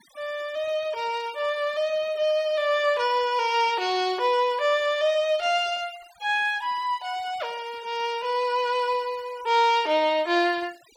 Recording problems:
noise reduction artefacts; signal-to-artefact ratio 23 dB

